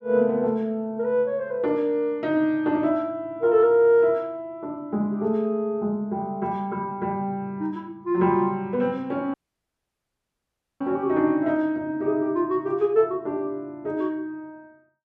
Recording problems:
dropout; at 9.5 s for 1.5 s

